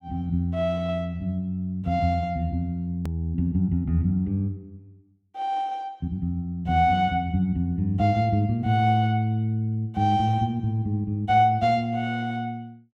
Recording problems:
click at an edit; at 3 s

